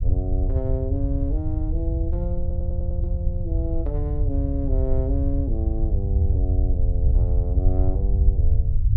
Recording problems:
low-frequency rumble; below 84 Hz, SNR -8 dB
audio stuttering; at 2.5 s

